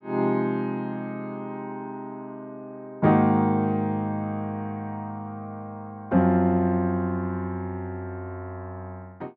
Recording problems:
none

